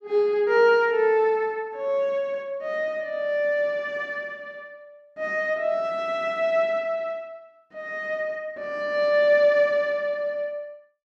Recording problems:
none

